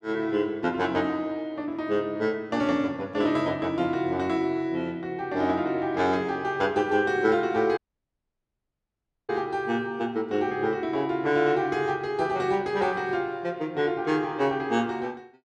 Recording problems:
dropout; at 8 s for 1.5 s

